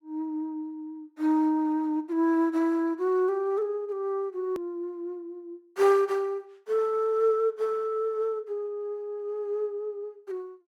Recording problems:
click at an edit; at 4.5 s

